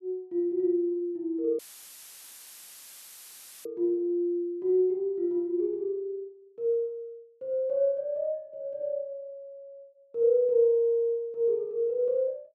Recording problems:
dropout; at 1.5 s for 2 s; filled with static

